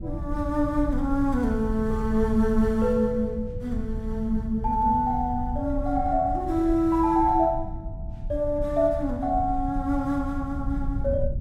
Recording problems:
rumble; below 92 Hz, SNR 8 dB

